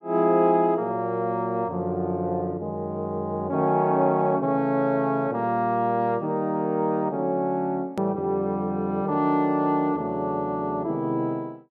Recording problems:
hard cut with a click; at 8 s

